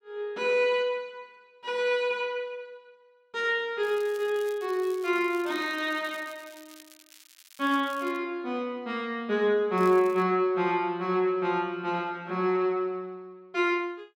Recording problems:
crackle; from 4 to 8 s and at 10 s; loose cable, SNR 23 dB

